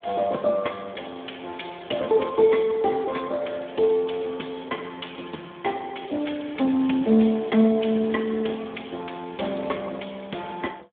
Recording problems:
phone line; 170 Hz to 3.5 kHz, Speex

